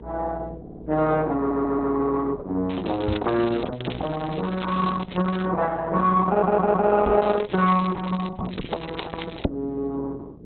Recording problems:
lossy compression; Opus, log-spectral distance 7 dB, nothing above 3.9 kHz
hum; 60 Hz, harmonics up to 480 Hz, SNR 19 dB
audio stuttering; at 0.5 s, at 1.5 s and at 6.5 s
crackling; from 2.5 to 5.5 s and from 7 to 9.5 s; loose cable, SNR 15 dB
knock on the microphone; at 3 s and at 7 s; peak +2 dB vs average level

